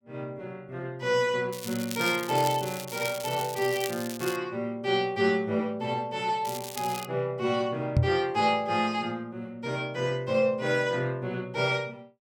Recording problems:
crackle; from 1.5 to 4.5 s and at 6.5 s; loose cable, SNR 10 dB
knock on the microphone; at 8 s; peak +8 dB vs average level

